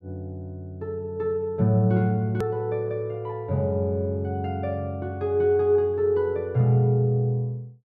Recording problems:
edit click; at 2.5 s

